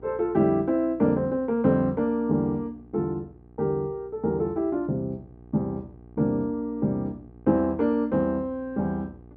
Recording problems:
electrical hum; 60 Hz, harmonics up to 840 Hz, SNR 24 dB

